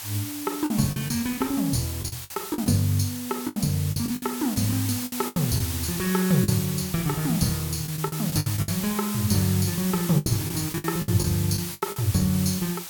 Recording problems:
hiss; SNR 7 dB
lost packets; 10% of the sound replaced, filled with the last packet

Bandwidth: 18 kHz